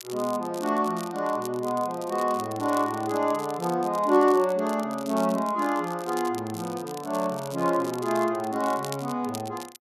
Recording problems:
crackling; vinyl, SNR 17 dB

